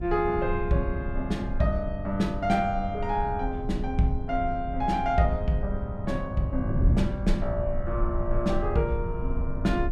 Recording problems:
low-frequency rumble; below 56 Hz, SNR 8 dB
wind on the microphone; below 150 Hz, SNR 7 dB

